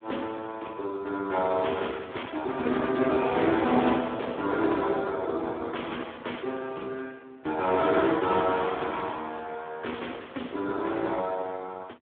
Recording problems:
telephone audio; 220 Hz to 3.7 kHz, Speex

